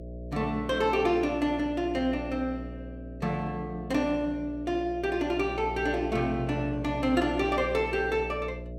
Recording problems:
electrical hum; 60 Hz, harmonics up to 660 Hz, SNR 11 dB

